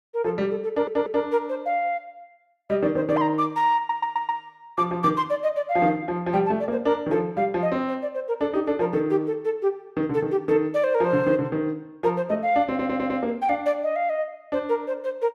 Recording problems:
stutter; at 0.5 s, at 4 s and at 13 s

